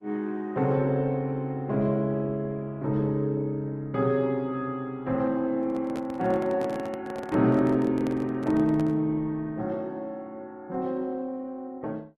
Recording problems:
lossy codec; Opus, log-spectral distance 2 dB
handling noise; from 5.5 to 9 s; peak -6 dB vs average level

